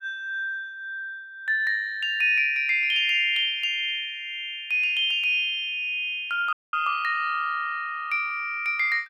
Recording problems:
audio cutting out; at 6.5 s

